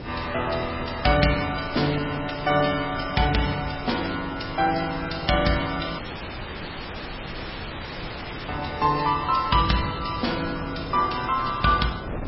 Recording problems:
codec artefacts; MP3, log-spectral distance 12 dB, nothing above 5.3 kHz
hiss; SNR 27 dB
wind on the microphone; below 550 Hz, SNR 13 dB
audio cutting out; at 6 s for 2.5 s

